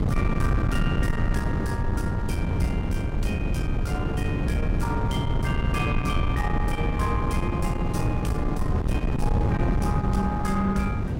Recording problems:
distorted audio; soft clipping, signal-to-distortion ratio 11 dB
wind on the microphone; below 200 Hz, SNR -3 dB

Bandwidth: 16.5 kHz